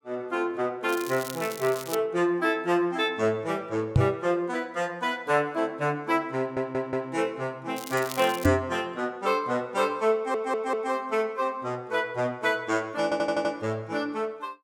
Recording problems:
crackling; from 1 to 2 s and at 8 s; loose cable, SNR 12 dB
knock on the microphone; at 4 s and at 8.5 s; peak +9 dB vs average level
audio stuttering; at 6.5 s, at 10 s and at 13 s

